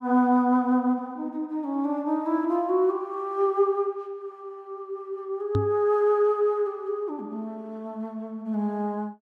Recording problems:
knock on the microphone; at 5.5 s; peak +3 dB vs average level

